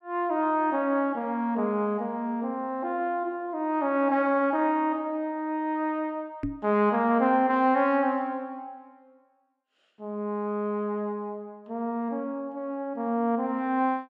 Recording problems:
microphone bump; at 6.5 s; peak 0 dB vs average level

